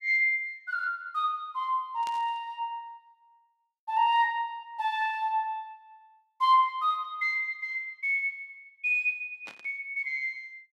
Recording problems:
burst of static; at 2 s and at 9.5 s; peak -11 dB vs average level

